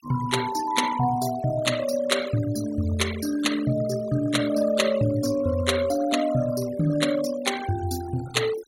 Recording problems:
noise reduction artefacts; signal-to-artefact ratio 14 dB

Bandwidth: 16 kHz